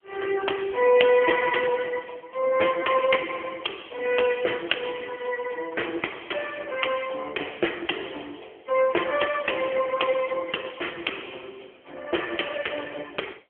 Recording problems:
phone line; 280 Hz to 3.2 kHz, AMR-NB

